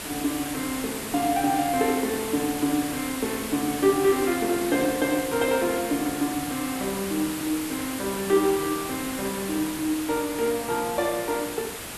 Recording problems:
background hiss; slope -2 dB per octave, SNR 7 dB

